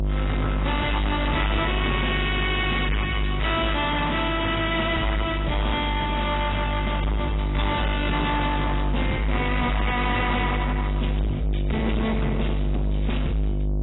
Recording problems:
lossy codec; AAC, log-spectral distance 5 dB, nothing above 3.7 kHz
distortion; soft clipping, signal-to-distortion ratio 7 dB
hum; 50 Hz, harmonics up to 500 Hz, SNR 2 dB

